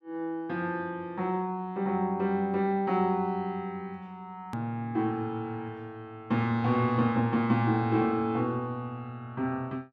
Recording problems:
click at an edit; at 4.5 s

